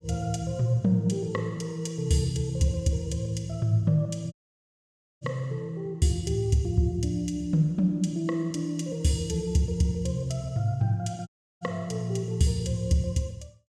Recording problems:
dropout; at 4.5 s for 1 s and at 11 s

